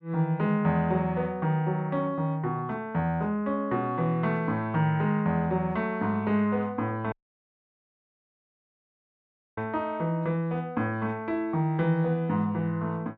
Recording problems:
dropout; at 7 s for 2.5 s

